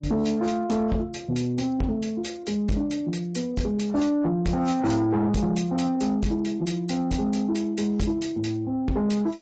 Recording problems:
lossy compression; AAC, log-spectral distance 2 dB, nothing above 7.6 kHz
distortion; soft clipping, signal-to-distortion ratio 11 dB

